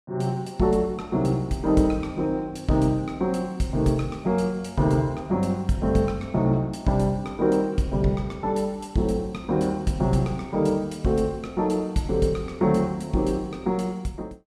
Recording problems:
none

